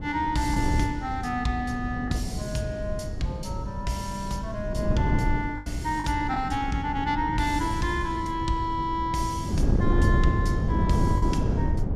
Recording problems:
wind on the microphone; below 190 Hz, SNR 0 dB
packet loss; 1.9% of the sound replaced, filled with the last packet

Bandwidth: 13.5 kHz